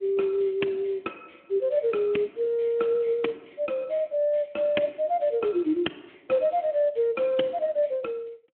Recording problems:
phone line; 190 Hz to 3.4 kHz, Speex

